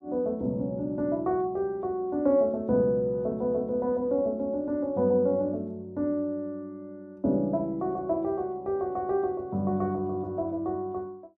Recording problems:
none

